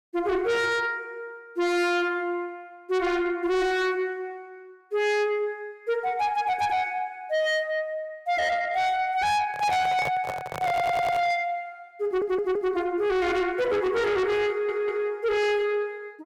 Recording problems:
distortion; soft clipping, signal-to-distortion ratio 8 dB
handling noise; from 9.5 to 11 s; peak -1 dB vs average level
audio stuttering; at 11 s, at 12 s and at 14 s

